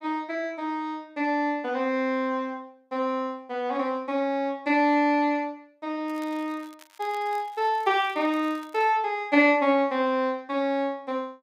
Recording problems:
crackling; from 6 to 9 s; loose cable, SNR 27 dB

